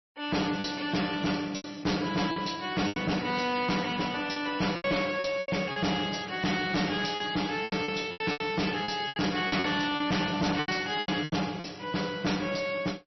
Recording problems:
lossy compression; MP3, log-spectral distance 8 dB, nothing above 5.8 kHz
distortion; hard clipping, uneven, signal-to-distortion ratio 5 dB
lost packets; 11% of the sound replaced, filled with repeated pitch periods

